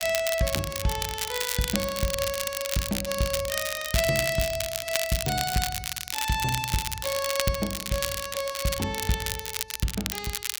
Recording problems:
crackling; vinyl, SNR 2 dB

